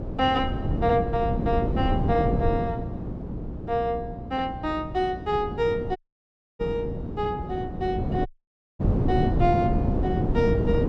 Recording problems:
electrical hum; 60 Hz, harmonics up to 360 Hz, SNR 14 dB
wind noise; below 280 Hz, SNR 1 dB
dropout; at 6 s for 0.5 s and at 8.5 s for 0.5 s

